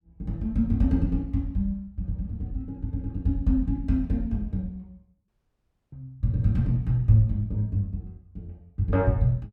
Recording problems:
audio cutting out; at 5.5 s for 0.5 s

